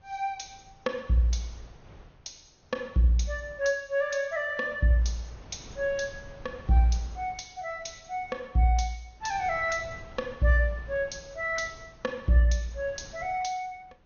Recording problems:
treble cut off; nothing above 6.5 kHz
lossy codec; Vorbis, log-spectral distance 3 dB
wind on the microphone; below 470 Hz, SNR 22 dB

